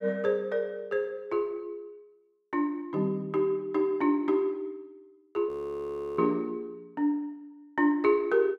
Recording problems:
frozen audio; at 5.5 s for 0.5 s

